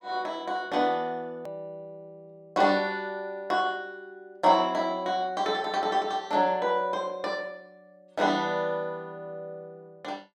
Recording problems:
edit click; at 1.5 s

